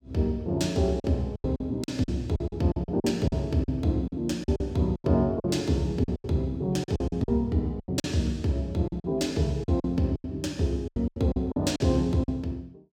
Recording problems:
lost packets; 14% of the sound replaced, filled with silence

